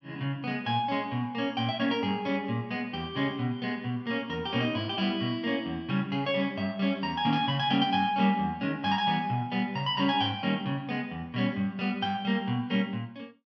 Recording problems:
none

